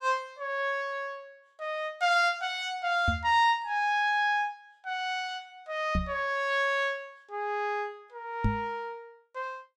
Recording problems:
microphone bump; at 3 s, at 6 s and at 8.5 s; peak +5 dB vs average level

